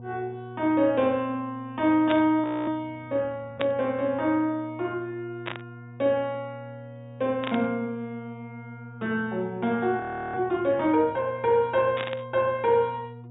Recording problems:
treble cut off; nothing above 4 kHz
hum; 60 Hz, harmonics up to 960 Hz, SNR 17 dB
static burst; 5 times, first at 2 s; peak -2 dB vs average level
audio freezing; at 2.5 s and at 10 s

